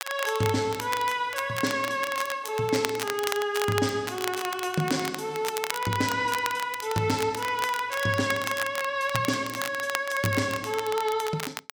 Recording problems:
crackle; vinyl, SNR 8 dB

